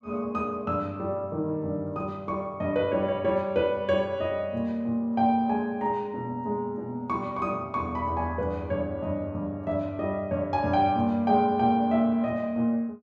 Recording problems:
none

